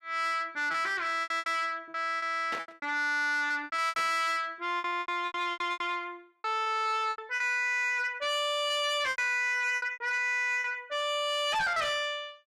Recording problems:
distorted audio; soft clipping, signal-to-distortion ratio 11 dB
packet loss; 12% of the sound replaced, filled with repeated pitch periods
static burst; at 2.5 s and at 4 s; peak -5 dB vs average level

